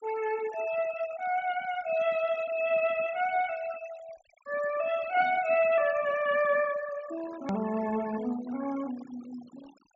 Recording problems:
treble cut off; nothing above 8 kHz
denoising artefacts; signal-to-artefact ratio 18 dB
edit click; at 7.5 s

